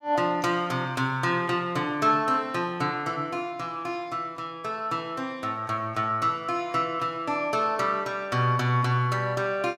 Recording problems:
none

